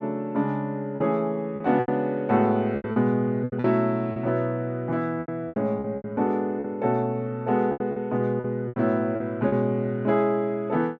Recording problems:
lost packets; 10% of the sound replaced, filled with repeated pitch periods

